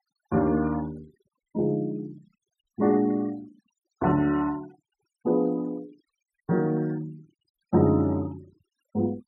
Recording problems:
denoising artefacts; signal-to-artefact ratio 25 dB

